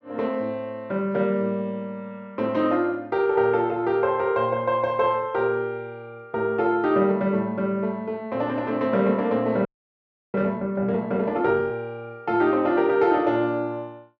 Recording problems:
frozen audio; at 9.5 s for 0.5 s

